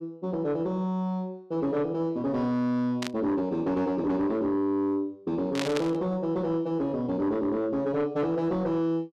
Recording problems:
distortion; soft clipping, signal-to-distortion ratio 12 dB
burst of static; at 3 s and at 5.5 s; peak 0 dB vs average level

